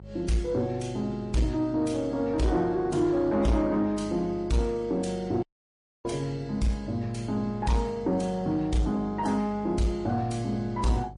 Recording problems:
lossy codec; MP3, then MP3, log-spectral distance 2 dB, nothing above 10.4 kHz
distorted audio; soft clipping, signal-to-distortion ratio 10 dB
hum; 50 Hz, harmonics up to 600 Hz, SNR 17 dB
dropout; at 5.5 s for 0.5 s

